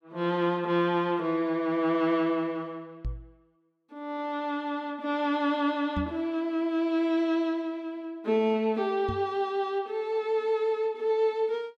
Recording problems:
knock on the microphone; at 3 s, at 6 s and at 9 s; peak -1 dB vs average level

